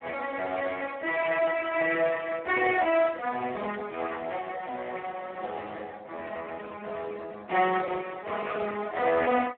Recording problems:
phone line; 280 Hz to 3.6 kHz, Speex

